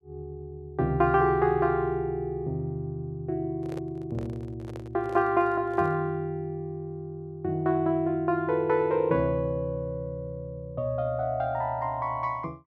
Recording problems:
handling noise; from 3.5 to 6 s; peak -9 dB vs average level

